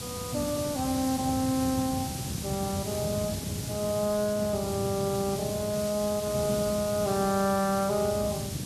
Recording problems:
lossy codec; Speex, log-spectral distance 3 dB
background hiss; SNR 8 dB
wind on the microphone; below 220 Hz, SNR 7 dB
crackle; 4 times, first at 1 s; loose cable, SNR 28 dB

